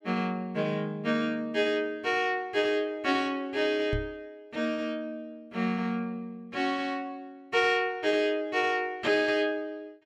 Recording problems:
microphone bump; at 4 s; peak 0 dB vs average level

